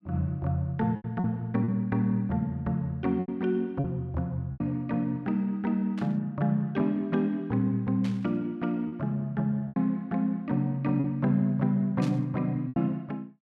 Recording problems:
packet loss; 5% of the sound replaced, filled with repeated pitch periods
burst of static; at 6 s, at 8 s and at 12 s; peak -10 dB vs average level

